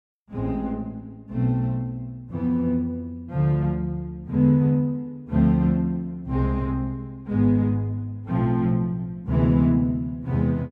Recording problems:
none

